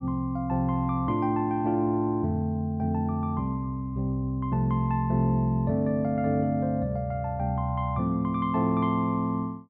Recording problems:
none

